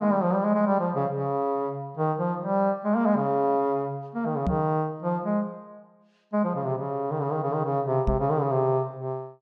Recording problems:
microphone bump; at 4.5 s and at 8 s; peak +2 dB vs average level

